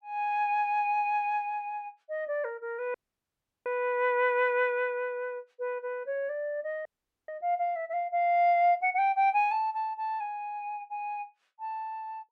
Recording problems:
audio cutting out; at 3 s for 0.5 s and at 7 s

